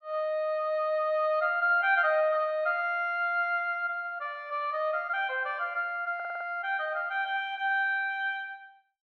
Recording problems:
stutter; at 6 s

